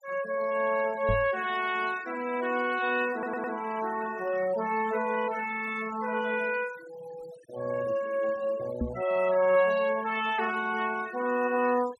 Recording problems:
noise reduction artefacts; signal-to-artefact ratio 16 dB
knock on the microphone; at 1 s and at 9 s; peak +1 dB vs average level
audio stuttering; at 3 s

